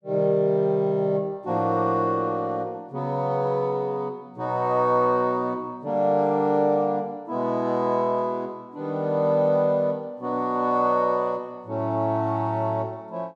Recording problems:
none

